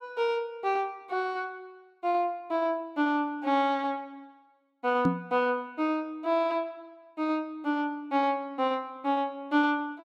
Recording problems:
microphone thump; at 5 s; peak +7 dB vs average level

